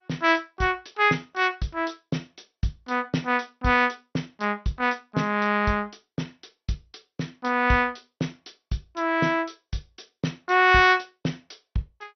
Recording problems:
lossy compression; MP2, log-spectral distance 6 dB, nothing above 6 kHz

